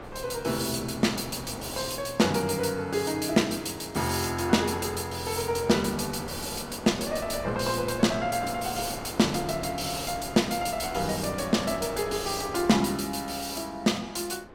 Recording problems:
wind noise; below 1 kHz, SNR 13 dB

